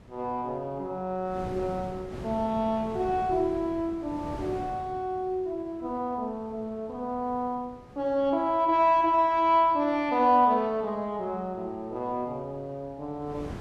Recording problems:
wind on the microphone; below 510 Hz, SNR 18 dB

